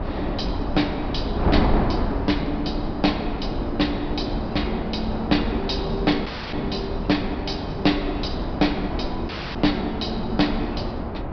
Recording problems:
treble cut off; nothing above 5.5 kHz
wind on the microphone; below 490 Hz, SNR 3 dB
audio cutting out; at 6.5 s and at 9.5 s

